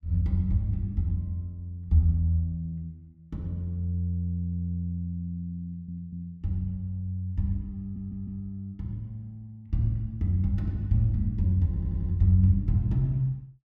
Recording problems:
stutter; 4 times, first at 4.5 s

